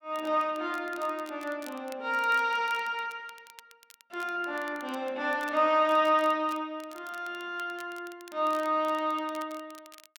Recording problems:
crackle; vinyl, SNR 23 dB

